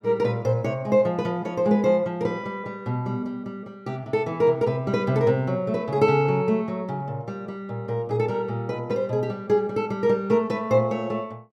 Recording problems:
none

